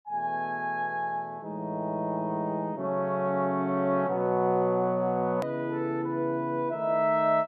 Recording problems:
click at an edit; at 5.5 s

